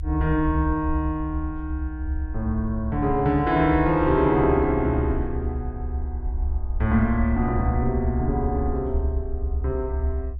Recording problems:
rumble; below 72 Hz, strongest tone 70 Hz, SNR 5 dB

